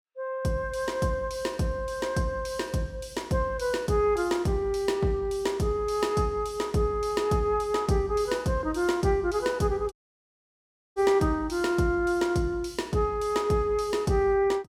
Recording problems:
audio cutting out; at 10 s for 1 s

